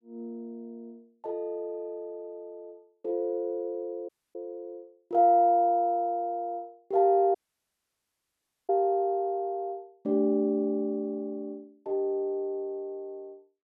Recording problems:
audio cutting out; at 4 s and at 7.5 s for 1.5 s

